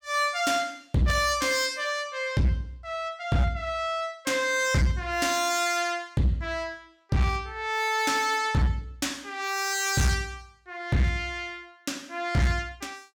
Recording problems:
distorted audio; hard clipping, signal-to-distortion ratio 12 dB

